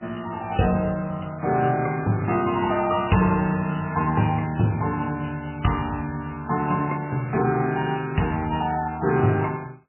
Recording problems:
lossy compression; MP3, log-spectral distance 7 dB, nothing above 2.9 kHz

